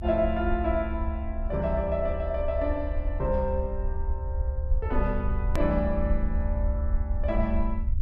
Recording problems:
rumble; below 70 Hz, SNR 1 dB
edit click; at 5.5 s

